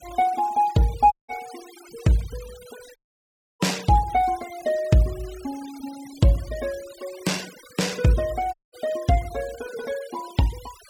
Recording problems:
noise reduction artefacts; signal-to-artefact ratio 19 dB
audio cutting out; at 1 s, at 3 s for 0.5 s and at 8.5 s

